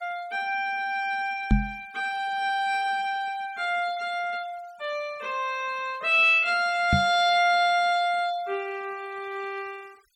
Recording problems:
noise reduction artefacts; signal-to-artefact ratio 27 dB
knock on the microphone; at 1.5 s and at 7 s; peak +7 dB vs average level

